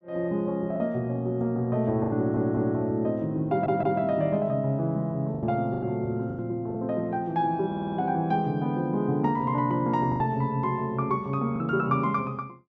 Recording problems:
packet loss; 5% of the sound replaced, filled with the last packet
stutter; at 2 s, at 3.5 s and at 7.5 s

